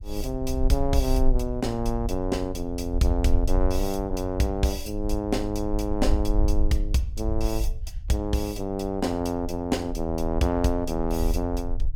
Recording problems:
low-frequency rumble; below 52 Hz, SNR 4 dB

